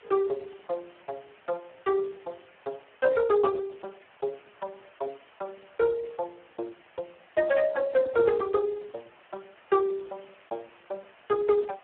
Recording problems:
telephone audio; 260 Hz to 2.3 kHz, Speex
hiss; SNR 27 dB

